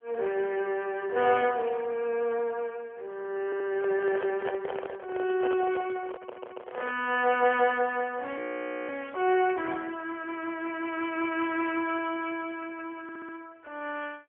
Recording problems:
telephone audio; 340 Hz to 3.2 kHz, AMR-NB
audio stuttering; at 3.5 s, at 6 s and at 13 s
handling noise; from 3.5 to 7 s; peak -2 dB vs average level
audio freezing; at 8.5 s for 0.5 s

